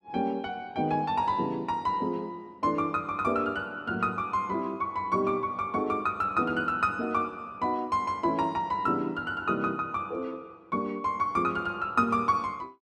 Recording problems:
none

